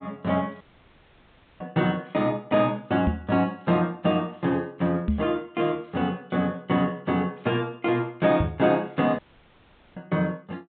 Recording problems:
low-pass filter; nothing above 4 kHz
dropout; at 0.5 s for 1 s and at 9 s for 1 s
microphone bump; at 3 s, at 5 s and at 8.5 s; peak +5 dB vs average level

